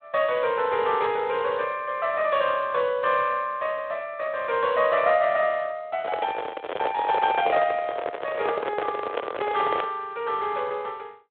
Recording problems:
phone line; 86 Hz to 3.8 kHz, Speex
handling noise; from 6 to 10 s; peak +1 dB vs average level

